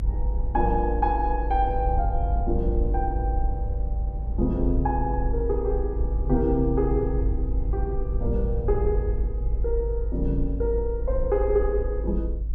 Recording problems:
rumble; below 52 Hz, strongest tone 52 Hz, SNR 2 dB
wind noise; below 90 Hz, SNR 7 dB

